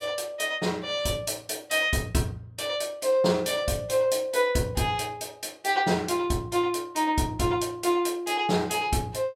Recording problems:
none

